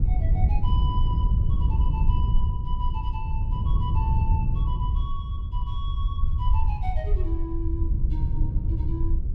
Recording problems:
rumble; below 68 Hz, SNR -7 dB
wind on the microphone; below 96 Hz, SNR -10 dB

